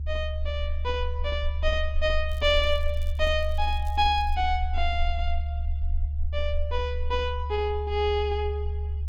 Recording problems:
low-frequency rumble; below 74 Hz, SNR 2 dB
crackle; from 2.5 to 4.5 s; loose cable, SNR 27 dB

